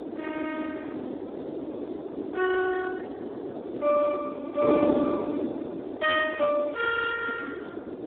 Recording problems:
telephone audio; 320 Hz to 2.3 kHz, Speex
wind on the microphone; below 500 Hz, SNR 4 dB

